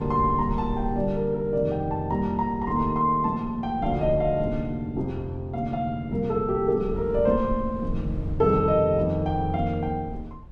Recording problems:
rumble; below 94 Hz, SNR 13 dB

